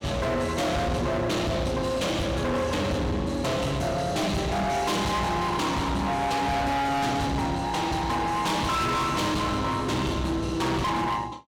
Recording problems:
distorted audio; hard clipping, uneven, signal-to-distortion ratio 5 dB

